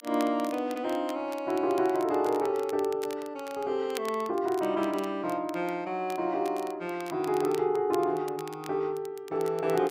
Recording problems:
crackle; vinyl, SNR 19 dB

